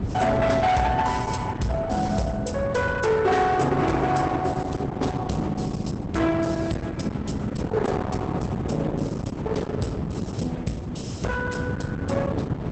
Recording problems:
lossy codec; Opus, log-spectral distance 3 dB, nothing above 8.2 kHz
distortion; hard clipping, signal-to-distortion ratio 8 dB
wind on the microphone; below 390 Hz, SNR 4 dB

